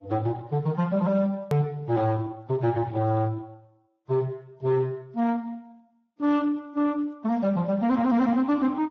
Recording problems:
codec artefacts; Vorbis, then Speex, log-spectral distance 2 dB, nothing above 15.1 kHz
distorted audio; soft clipping, signal-to-distortion ratio 10 dB
click at an edit; at 1.5 s

